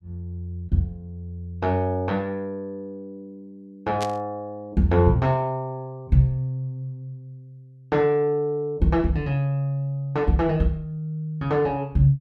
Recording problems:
burst of static; at 4 s; peak -4 dB vs average level

